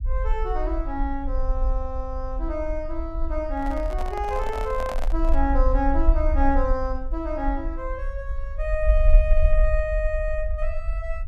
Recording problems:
low-frequency rumble; below 48 Hz, SNR -1 dB
handling noise; from 3.5 to 5.5 s; peak -1 dB vs average level

